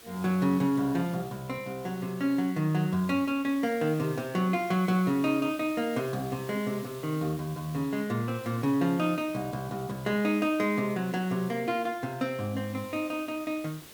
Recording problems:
hiss; slope -2 dB per octave, SNR 19 dB

